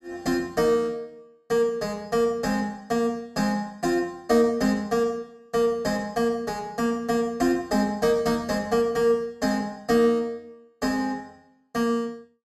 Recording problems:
none

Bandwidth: 15.5 kHz